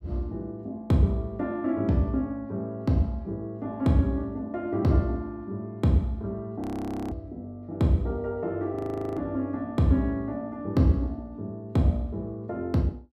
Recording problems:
audio freezing; at 6.5 s for 0.5 s and at 9 s

